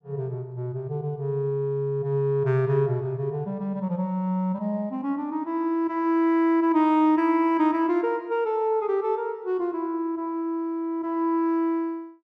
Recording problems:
none

